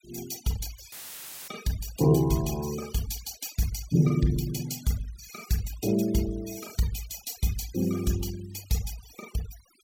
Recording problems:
denoising artefacts; signal-to-artefact ratio 16 dB
dropout; at 1 s for 0.5 s; filled with static

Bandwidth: 16.5 kHz